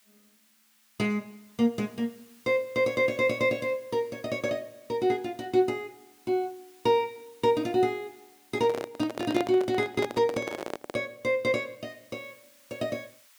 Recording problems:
hiss; SNR 29 dB
microphone handling noise; from 8.5 to 11 s; peak -1 dB vs average level

